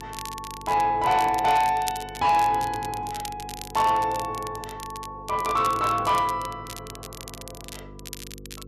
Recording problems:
distorted audio; soft clipping, signal-to-distortion ratio 11 dB
mains hum; 50 Hz, harmonics up to 500 Hz, SNR 21 dB
crackling; vinyl, SNR 16 dB

